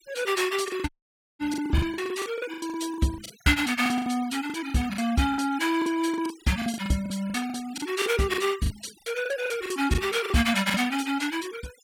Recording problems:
denoising artefacts; signal-to-artefact ratio 17 dB
lost packets; 16% of the sound replaced, filled with the last packet
dropout; at 1 s

